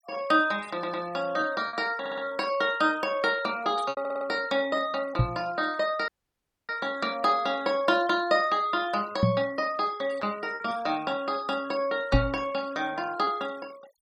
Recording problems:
denoising artefacts; signal-to-artefact ratio 22 dB
lost packets; 2% of the sound replaced, filled with repeated pitch periods
stutter; at 0.5 s, at 2 s and at 4 s
knock on the microphone; at 5 s, at 9 s and at 12 s; peak +8 dB vs average level
audio cutting out; at 6 s for 0.5 s

